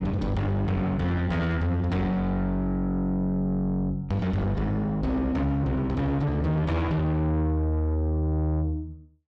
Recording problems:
distortion; soft clipping, signal-to-distortion ratio 8 dB

